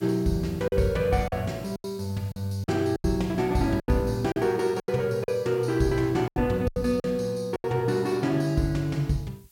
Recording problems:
background hiss; slope +2 dB per octave, SNR 28 dB
packet loss; 9% of the sound replaced, filled with silence

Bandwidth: 16.5 kHz